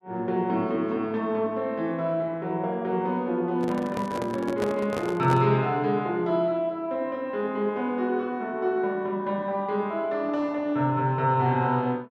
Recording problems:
microphone handling noise; from 3.5 to 5.5 s; peak -1 dB vs average level

